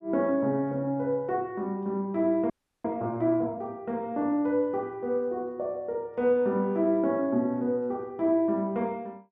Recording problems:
audio freezing; at 2.5 s

